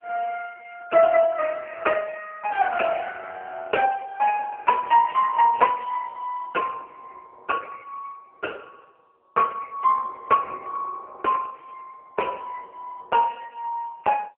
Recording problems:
telephone audio; 370 Hz to 2.5 kHz, AMR-NB

